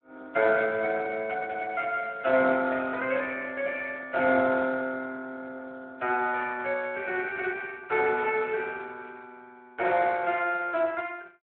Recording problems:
phone line; 240 Hz to 3.3 kHz, Speex

